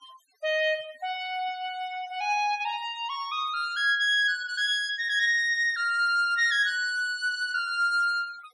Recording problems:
denoising artefacts; signal-to-artefact ratio 24 dB

